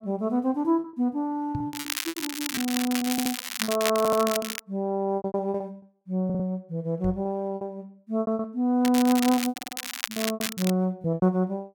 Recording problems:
packet loss; 15% of the sound replaced, filled with repeated pitch periods
microphone bump; at 1.5 s and at 7 s; peak -2 dB vs average level
crackle; from 1.5 to 4.5 s and from 9 to 11 s; loose cable, SNR 5 dB
stutter; 4 times, first at 3 s

